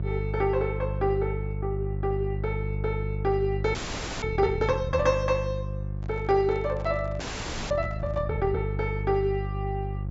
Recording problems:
treble cut off; nothing above 8 kHz
electrical hum; 50 Hz, harmonics up to 500 Hz, SNR 4 dB
audio freezing; at 4 s and at 7 s for 0.5 s
handling noise; from 6 to 8 s; peak -12 dB vs average level

